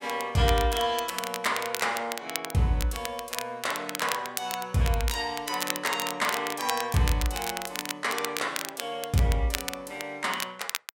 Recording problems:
crackle; vinyl, SNR 6 dB

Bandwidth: 16 kHz